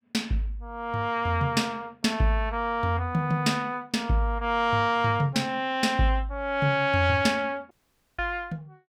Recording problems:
audio cutting out; at 7.5 s

